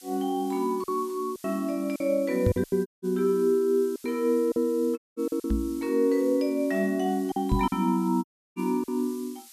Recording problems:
background hiss; slope +5 dB per octave, SNR 22 dB
lost packets; 8% of the sound replaced, filled with silence
microphone bump; at 2.5 s, at 5.5 s and at 7.5 s; peak +5 dB vs average level
audio cutting out; at 3 s, at 5 s and at 8 s

